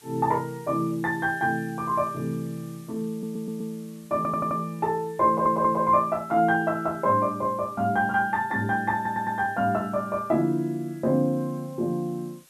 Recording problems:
hiss; slope +1 dB per octave, SNR 27 dB
stutter; 4 times, first at 3 s

